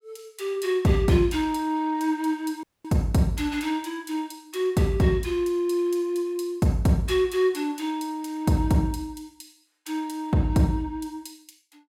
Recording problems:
dropout; at 2.5 s

